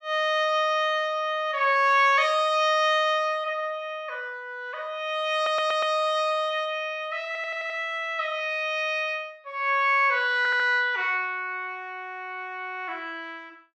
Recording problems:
audio stuttering; at 5.5 s, at 7.5 s and at 10 s

